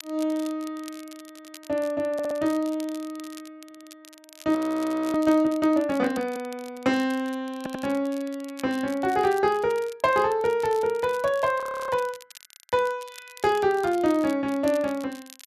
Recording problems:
crackle; vinyl, SNR 21 dB
audio stuttering; 4 times, first at 1.5 s
frozen audio; at 4.5 s for 0.5 s and at 12 s

